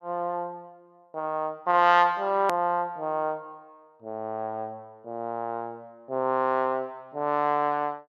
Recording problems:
click at an edit; at 2.5 s

